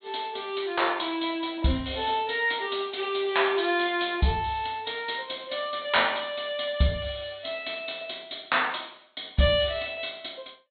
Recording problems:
treble cut off; nothing above 4.1 kHz

